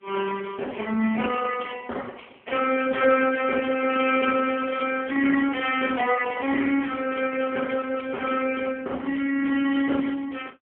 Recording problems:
phone line; 190 Hz to 3.1 kHz, AMR-NB

